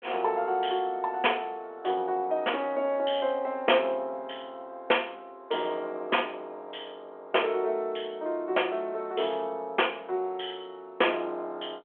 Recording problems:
phone line; 320 Hz to 3.2 kHz, G.726

